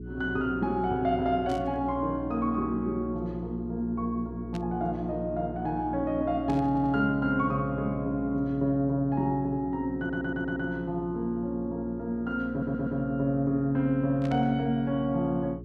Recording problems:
hum; 60 Hz, harmonics up to 420 Hz, SNR 12 dB
burst of static; 4 times, first at 1.5 s; peak -12 dB vs average level
audio stuttering; at 6.5 s, at 10 s and at 13 s

